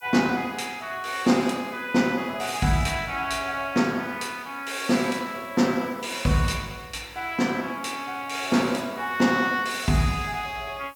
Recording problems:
background hiss; SNR 27 dB

